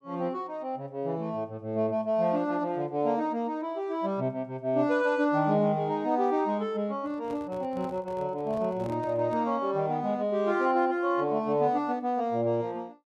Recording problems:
microphone handling noise; from 7 to 9.5 s; peak -11 dB vs average level

